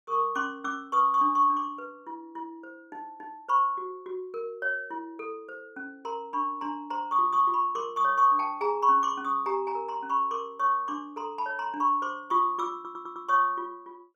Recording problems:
stutter; at 13 s

